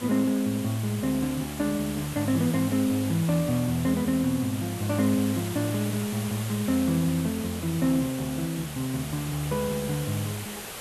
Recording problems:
hiss; slope -2 dB per octave, SNR 10 dB

